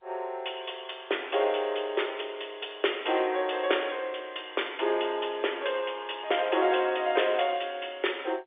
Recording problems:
telephone audio; 300 Hz to 3.6 kHz, G.711

